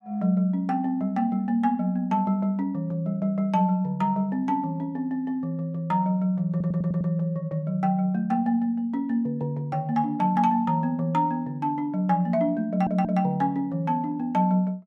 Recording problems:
stutter; at 6.5 s and at 13 s

